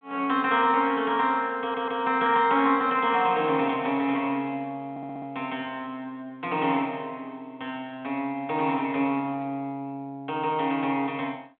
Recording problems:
telephone audio; 170 Hz to 3.6 kHz, G.726
audio stuttering; at 1.5 s and at 5 s

